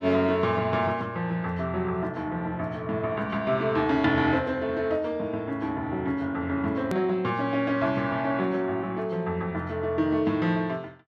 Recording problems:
edit click; at 7 s

